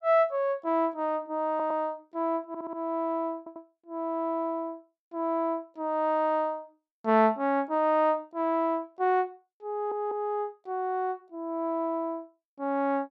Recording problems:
audio stuttering; 4 times, first at 1.5 s

